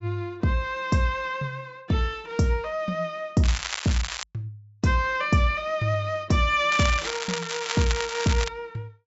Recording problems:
treble missing; nothing above 7.5 kHz
crackle; at 3.5 s and from 6.5 to 8.5 s; loose cable, SNR 6 dB

